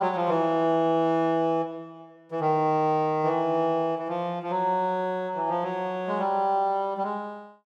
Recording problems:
none

